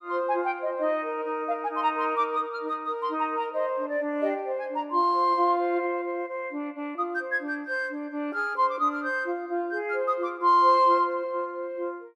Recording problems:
none

